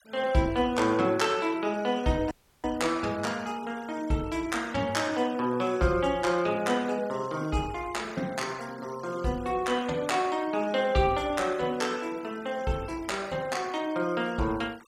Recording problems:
denoising artefacts; signal-to-artefact ratio 22 dB
dropout; at 2.5 s

